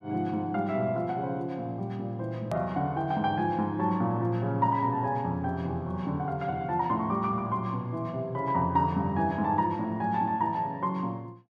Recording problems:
edit click; at 2.5 s

